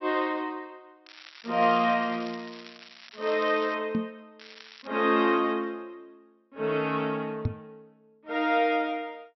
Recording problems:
treble cut off; nothing above 5.7 kHz
crackle; from 1 to 3.5 s and at 4.5 s; loose cable, SNR 20 dB
knock on the microphone; at 4 s and at 7.5 s; peak +2 dB vs average level

